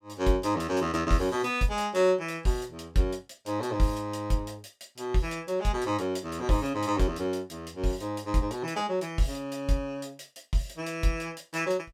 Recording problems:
none

